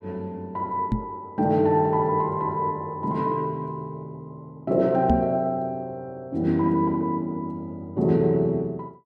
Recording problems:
microphone thump; at 1 s and at 5 s; peak +5 dB vs average level

